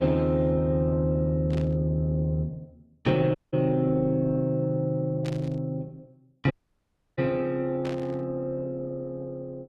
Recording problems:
lossy compression; Opus, log-spectral distance 2 dB
static burst; at 1.5 s, at 5 s and at 8 s; peak -11 dB vs average level
dropout; at 3.5 s and at 6.5 s for 0.5 s

